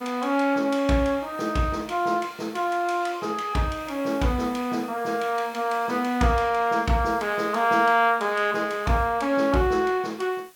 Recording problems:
background hiss; slope -1 dB per octave, SNR 28 dB

